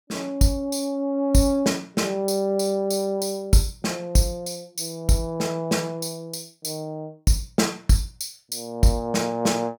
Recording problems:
none

